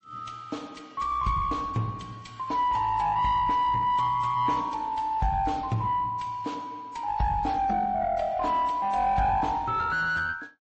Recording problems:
codec artefacts; MP3, then AAC, log-spectral distance 2 dB
distortion; soft clipping, signal-to-distortion ratio 8 dB

